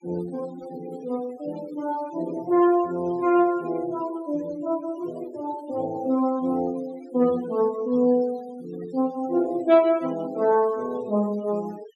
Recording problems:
noise reduction artefacts; signal-to-artefact ratio 21 dB

